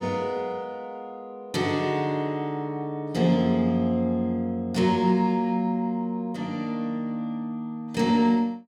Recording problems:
none

